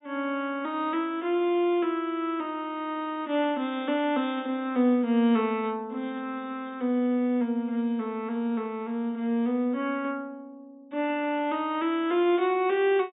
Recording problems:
treble missing; nothing above 4 kHz

